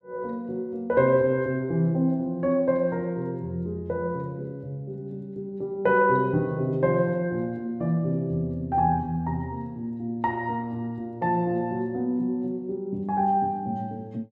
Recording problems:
none

